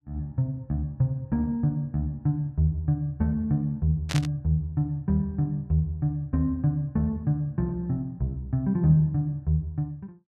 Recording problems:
static burst; at 4 s; peak -1 dB vs average level

